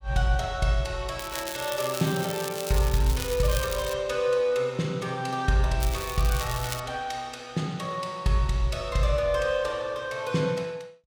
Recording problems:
crackle; from 1 to 4 s and from 6 to 7 s; loose cable, SNR 8 dB

